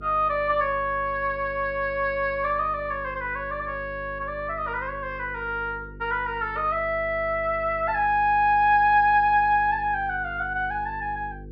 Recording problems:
treble cut off; nothing above 5.5 kHz
hum; 50 Hz, harmonics up to 500 Hz, SNR 18 dB

